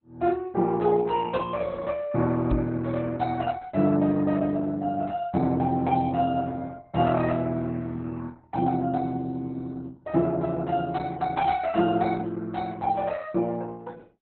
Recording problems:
lossy codec; Opus, log-spectral distance 3 dB, nothing above 4 kHz
knock on the microphone; at 2.5 s; peak +3 dB vs average level

